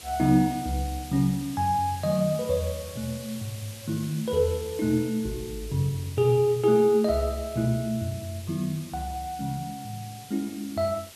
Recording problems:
hiss; SNR 16 dB

